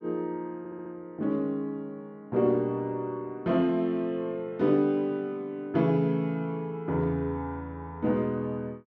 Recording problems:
audio stuttering; at 0.5 s

